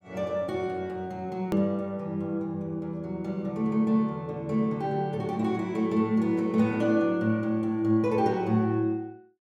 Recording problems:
edit click; at 1.5 s

